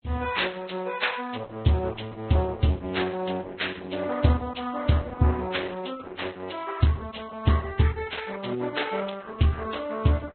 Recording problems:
codec artefacts; Opus, then Vorbis, log-spectral distance 6 dB, nothing above 4 kHz

